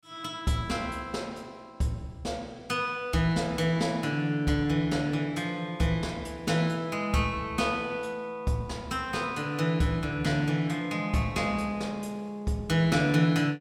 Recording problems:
none

